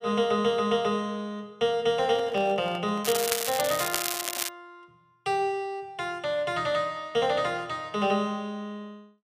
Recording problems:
microphone handling noise; from 2 to 4.5 s; peak -8 dB vs average level
crackling; from 3 to 4.5 s; loose cable, SNR 2 dB

